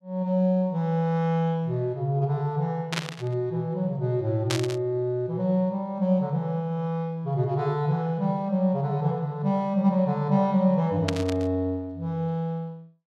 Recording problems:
burst of static; at 3 s, at 4.5 s and at 11 s; peak +2 dB vs average level

